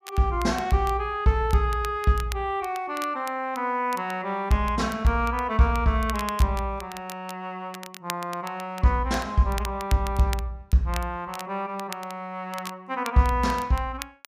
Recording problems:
crackle; vinyl, SNR 16 dB

